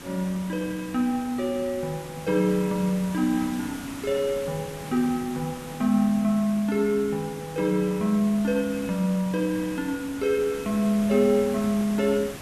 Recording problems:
background hiss; slope -3 dB per octave, SNR 14 dB

